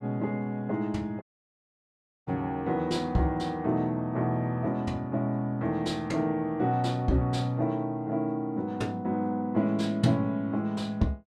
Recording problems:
dropout; at 1 s for 1 s

